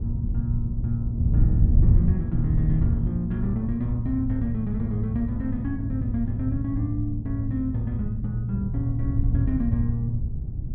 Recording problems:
wind noise; below 110 Hz, SNR 0 dB

